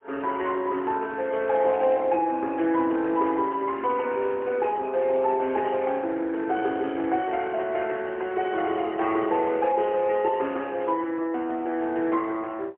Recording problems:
phone line; 260 Hz to 3.1 kHz, AMR-NB, then MP3

